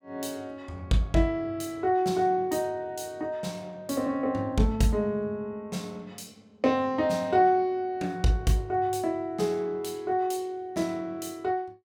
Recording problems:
none

